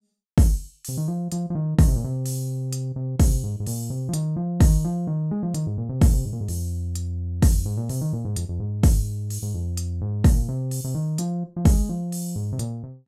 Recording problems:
none

